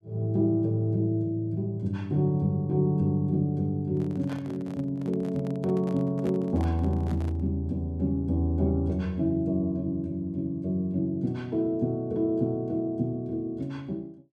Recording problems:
handling noise; from 4 to 7.5 s; peak -10 dB vs average level

